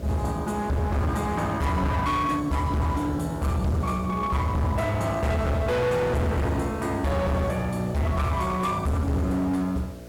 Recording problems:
distorted audio; hard clipping, signal-to-distortion ratio 7 dB
electrical hum; 60 Hz, harmonics up to 660 Hz, SNR 14 dB
hiss; slope -2 dB per octave, SNR 26 dB

